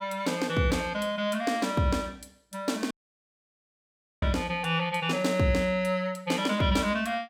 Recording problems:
dropout; at 3 s for 1.5 s

